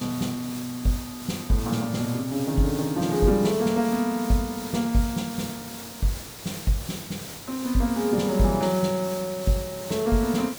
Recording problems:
background hiss; slope -2 dB per octave, SNR 12 dB

